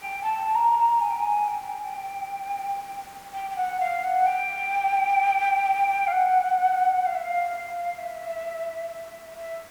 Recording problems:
hiss; slope -3 dB per octave, SNR 23 dB

